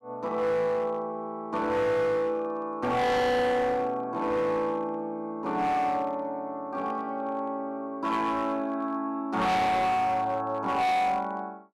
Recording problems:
distortion; hard clipping, signal-to-distortion ratio 6 dB

